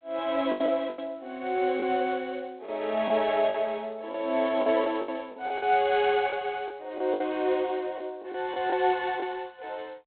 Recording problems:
phone line; 190 Hz to 3.7 kHz, G.726
packet loss; 8% of the sound replaced, filled with the last packet

